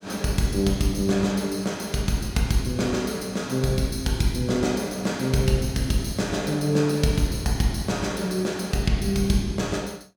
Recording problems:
none

